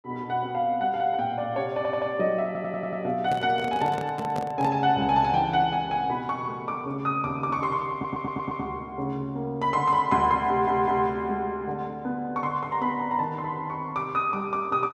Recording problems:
stutter; 4 times, first at 2 s
microphone handling noise; from 3 to 4.5 s; peak -4 dB vs average level

